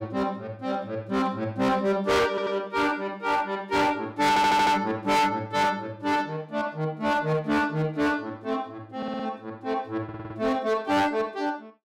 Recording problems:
distorted audio; hard clipping, uneven, signal-to-distortion ratio 6 dB
stutter; 4 times, first at 2.5 s

